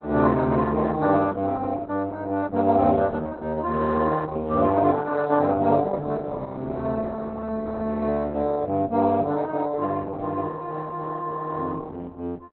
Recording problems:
lossy codec; Opus, log-spectral distance 3 dB, nothing above 4.1 kHz

